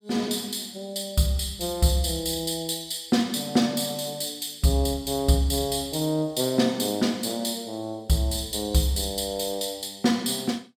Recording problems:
none

